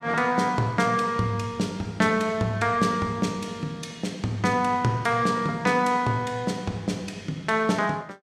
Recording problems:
none

